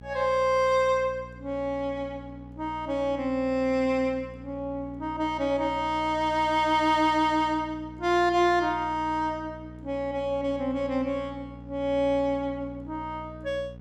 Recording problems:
hum; 60 Hz, harmonics up to 720 Hz, SNR 18 dB

